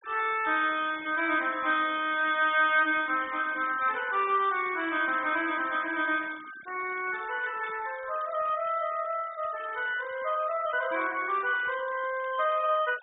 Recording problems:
treble missing; nothing above 4 kHz
denoising artefacts; signal-to-artefact ratio 20 dB

